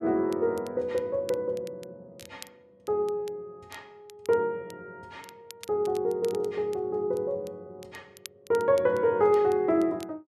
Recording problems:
crackle; vinyl, SNR 24 dB

